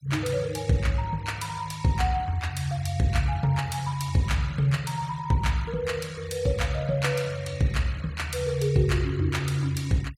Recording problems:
denoising artefacts; signal-to-artefact ratio 21 dB

